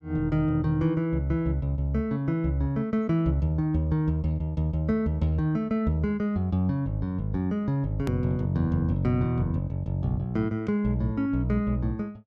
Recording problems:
edit click; at 8 s

